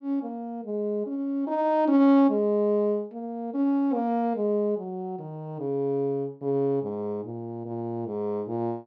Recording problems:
low-pass filter; nothing above 8 kHz

